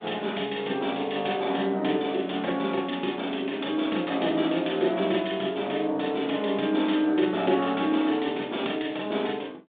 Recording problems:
telephone audio; 190 Hz to 3.7 kHz, G.726

